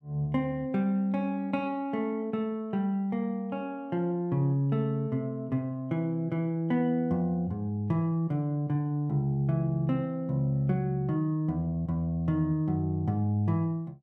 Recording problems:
none

